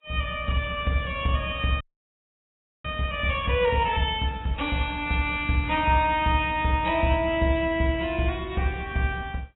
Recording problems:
lossy codec; AAC, log-spectral distance 3 dB, nothing above 3.4 kHz
frozen audio; at 2 s for 1 s

